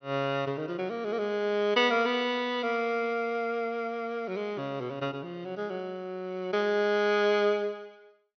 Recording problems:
low-pass filter; nothing above 6.1 kHz

